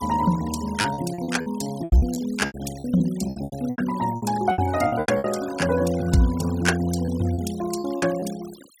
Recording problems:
denoising artefacts; signal-to-artefact ratio 16 dB
packet loss; 13% of the sound replaced, filled with repeated pitch periods

